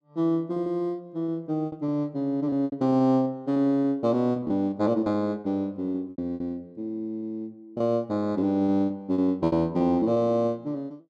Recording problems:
packet loss; 11% of the sound replaced, filled with repeated pitch periods

